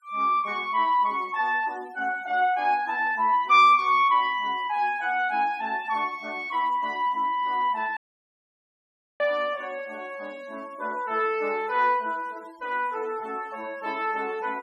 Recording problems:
noise reduction artefacts; signal-to-artefact ratio 28 dB
dropout; at 8 s for 1 s

